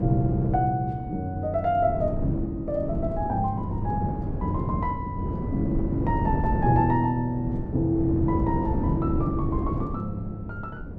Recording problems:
wind on the microphone; below 250 Hz, SNR 3 dB

